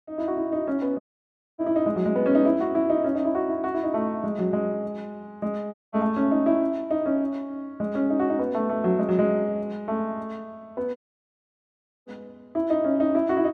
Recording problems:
dropout; at 1 s for 0.5 s, at 5.5 s and at 11 s for 1 s

